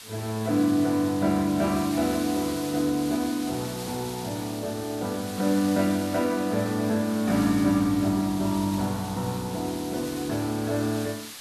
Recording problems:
background hiss; slope +2 dB per octave, SNR 13 dB

